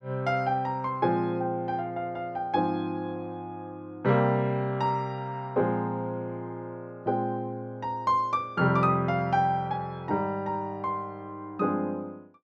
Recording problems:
none

